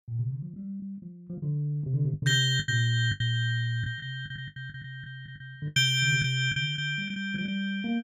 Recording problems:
lost packets; 12% of the sound replaced, filled with the last packet

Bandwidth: 13.5 kHz